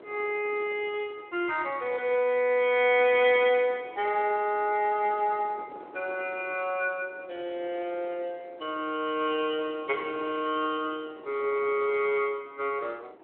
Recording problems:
phone line; 280 Hz to 3.3 kHz, Speex
wind on the microphone; below 680 Hz, SNR 20 dB

